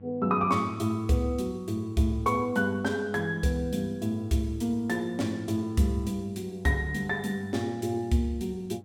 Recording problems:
hum; 50 Hz, harmonics up to 800 Hz, SNR 22 dB

